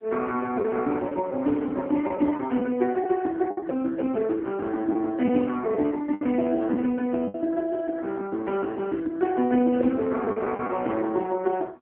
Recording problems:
phone line; 220 Hz to 2.8 kHz, AMR-NB
lost packets; 4% of the sound replaced, filled with the last packet

